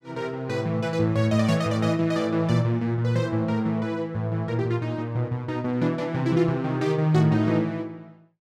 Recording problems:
none

